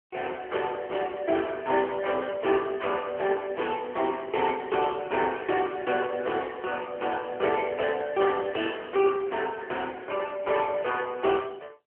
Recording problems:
phone line; 300 Hz to 3.3 kHz, AMR-NB

